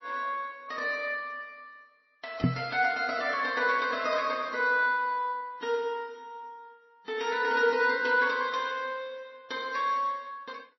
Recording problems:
lossy compression; AAC, then MP3, log-spectral distance 3 dB, nothing above 5.7 kHz
knock on the microphone; at 2.5 s; peak +7 dB vs average level

